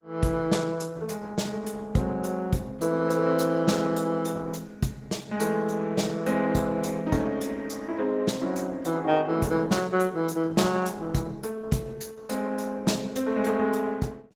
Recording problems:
lossy compression; Opus, log-spectral distance 4 dB

